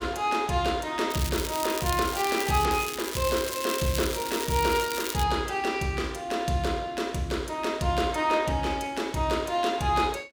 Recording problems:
crackling; from 1 to 2.5 s and from 2.5 to 5 s; loose cable, SNR 7 dB

